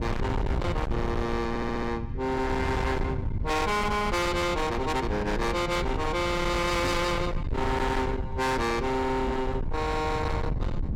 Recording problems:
distortion; hard clipping, signal-to-distortion ratio 7 dB
rumble; below 250 Hz, SNR 5 dB
audio stuttering; at 1.5 s
microphone thump; at 7 s and at 9.5 s; peak 0 dB vs average level

